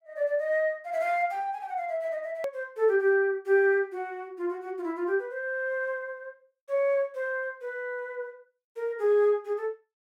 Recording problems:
edit click; at 2.5 s

